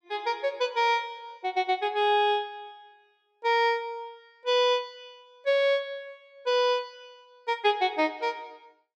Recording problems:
none

